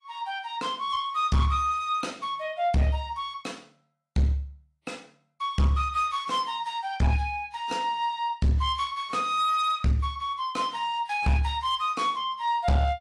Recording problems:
codec artefacts; AAC, log-spectral distance 2 dB
distortion; hard clipping, uneven, signal-to-distortion ratio 10 dB

